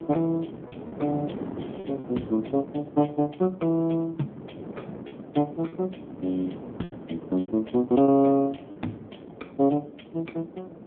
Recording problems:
telephone audio; 110 Hz to 3.5 kHz, AMR-NB
wind on the microphone; below 490 Hz, SNR 13 dB
lost packets; 4% of the sound replaced, filled with repeated pitch periods

